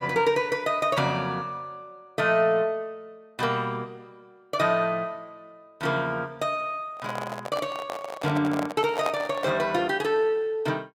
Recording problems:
microphone handling noise; from 7 to 9.5 s; peak +1 dB vs average level

